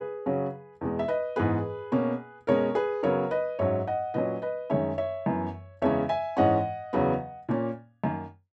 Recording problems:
none

